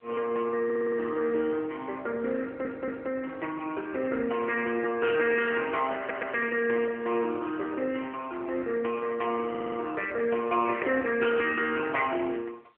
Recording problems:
phone line; 320 Hz to 3.2 kHz, AMR-NB
stutter; 4 times, first at 0.5 s

